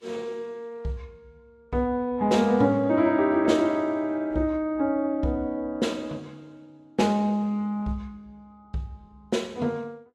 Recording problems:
lossy compression; Vorbis, log-spectral distance 2 dB, nothing above 12.3 kHz

